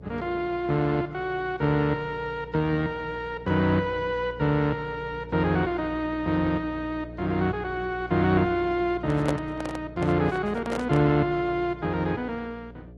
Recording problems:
codec artefacts; Opus, then AAC, log-spectral distance 2 dB
electrical hum; 60 Hz, harmonics up to 720 Hz, SNR 17 dB
microphone handling noise; from 9 to 11 s; peak +1 dB vs average level

